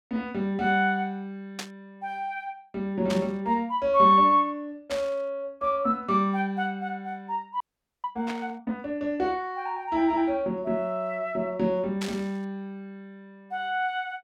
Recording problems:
static burst; 5 times, first at 1.5 s; peak -3 dB vs average level
audio freezing; at 7.5 s

